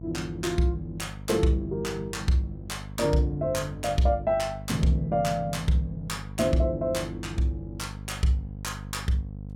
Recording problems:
hum; 50 Hz, harmonics up to 550 Hz, SNR 12 dB

